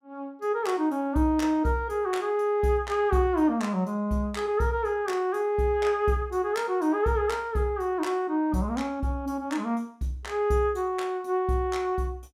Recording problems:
none

